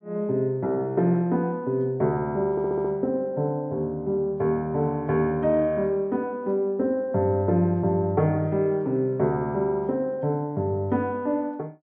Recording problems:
stutter; at 2.5 s

